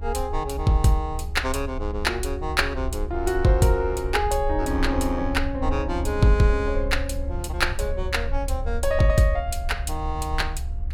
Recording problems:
low-frequency rumble; below 70 Hz, SNR 6 dB

